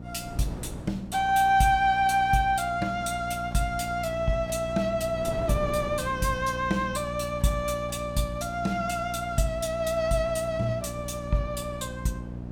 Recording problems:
hum; 60 Hz, harmonics up to 660 Hz, SNR 11 dB
wind on the microphone; below 410 Hz, SNR 17 dB

